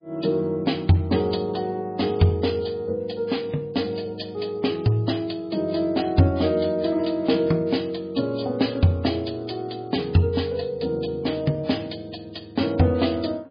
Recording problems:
codec artefacts; MP3, log-spectral distance 5 dB, nothing above 4.4 kHz

